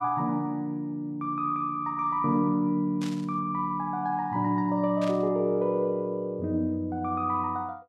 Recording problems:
burst of static; at 3 s and at 5 s; peak -9 dB vs average level

